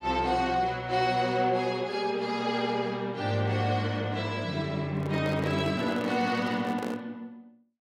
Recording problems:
handling noise; from 5 to 7 s; peak -3 dB vs average level

